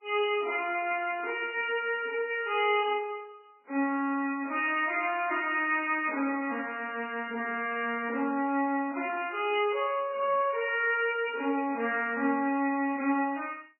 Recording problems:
lossy compression; MP3, log-spectral distance 3 dB, nothing above 2.5 kHz

